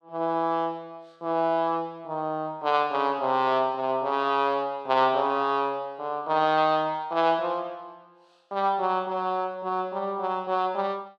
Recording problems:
none

